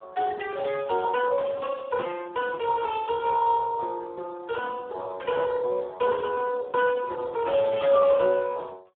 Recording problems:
telephone audio; 320 Hz to 2.6 kHz, Speex

